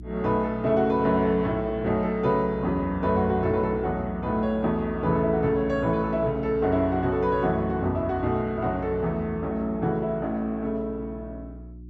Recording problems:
hum; 60 Hz, harmonics up to 360 Hz, SNR 15 dB

